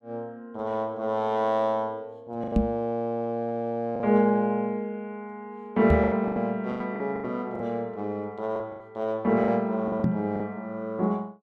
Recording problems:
packet loss; 7% of the sound replaced, filled with the last packet
microphone bump; at 2.5 s, at 6 s and at 10 s; peak +8 dB vs average level

